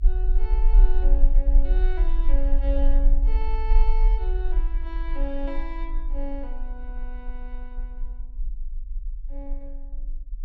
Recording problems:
rumble; below 38 Hz, strongest tone 22 Hz, SNR -11 dB

